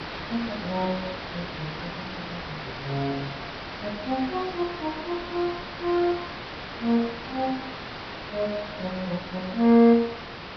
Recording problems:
treble missing; nothing above 5.5 kHz
hiss; SNR 9 dB

